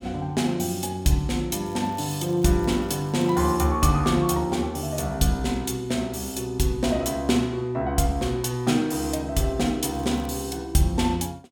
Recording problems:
crackle; from 1.5 to 3.5 s and at 10 s; loose cable, SNR 27 dB

